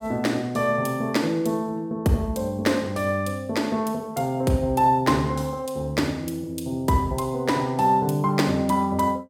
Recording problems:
none

